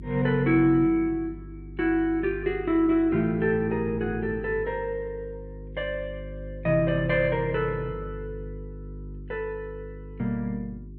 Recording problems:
electrical hum; 50 Hz, harmonics up to 400 Hz, SNR 14 dB

